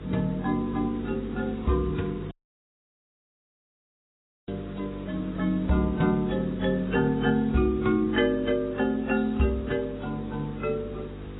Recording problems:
lossy codec; AAC, then AAC, log-spectral distance 4 dB, nothing above 3.4 kHz
hum; 50 Hz, harmonics up to 500 Hz, SNR 13 dB
hiss; SNR 24 dB
dropout; at 2.5 s for 2 s

